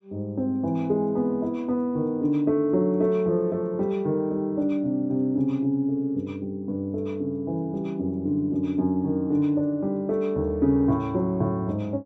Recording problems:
none

